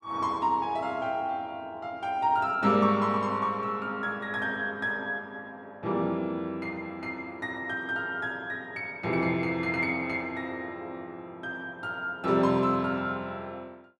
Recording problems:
none

